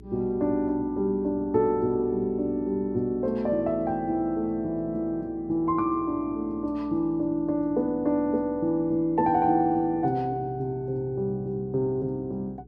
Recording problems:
electrical hum; 60 Hz, harmonics up to 420 Hz, SNR 22 dB

